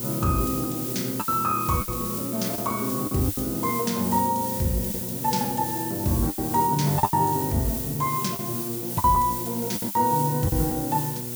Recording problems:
electrical hum; 60 Hz, harmonics up to 960 Hz, SNR 12 dB
hiss; slope +3 dB per octave, SNR 4 dB
lost packets; 7% of the sound replaced, filled with the last packet

